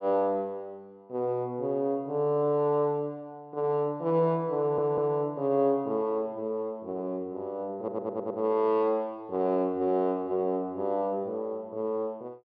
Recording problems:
stutter; at 4.5 s and at 8 s

